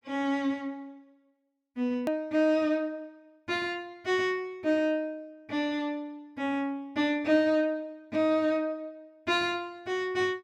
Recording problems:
hard cut with a click; at 2 s

